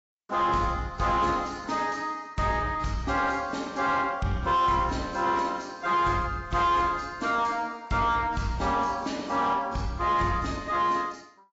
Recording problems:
lossy codec; AAC, log-spectral distance 4 dB, nothing above 7.3 kHz
distortion; soft clipping, signal-to-distortion ratio 8 dB

